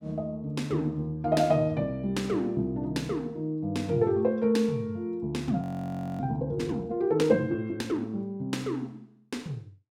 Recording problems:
audio freezing; at 5.5 s for 0.5 s

